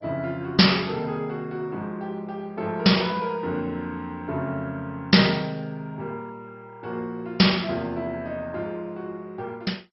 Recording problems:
lossy codec; MP2, log-spectral distance 3 dB, nothing above 5.5 kHz

